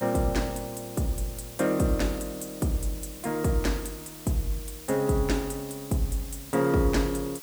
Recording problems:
hiss; slope +1 dB per octave, SNR 14 dB

